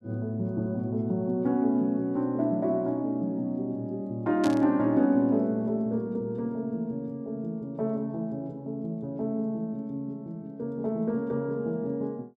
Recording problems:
static burst; at 4.5 s; peak -5 dB vs average level

